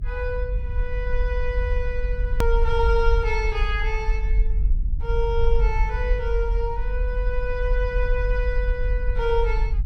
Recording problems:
low-frequency rumble; below 48 Hz, SNR -2 dB
click at an edit; at 2.5 s

